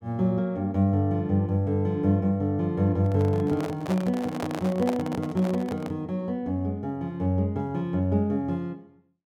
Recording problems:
handling noise; from 3 to 6 s; peak -1 dB vs average level

